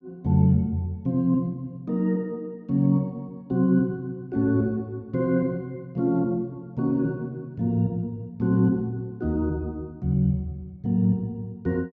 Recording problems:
none

